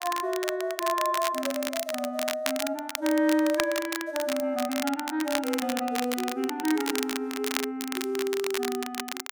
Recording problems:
crackling; vinyl, SNR 5 dB

